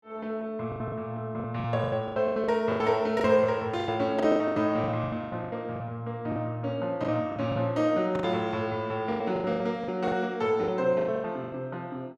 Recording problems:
lost packets; 17% of the sound replaced, filled with the last packet

